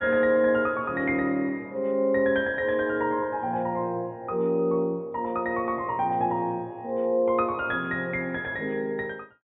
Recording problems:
treble missing; nothing above 4 kHz

